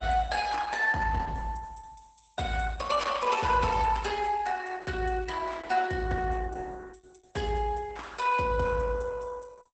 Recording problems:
codec artefacts; Opus, log-spectral distance 5 dB, nothing above 8 kHz

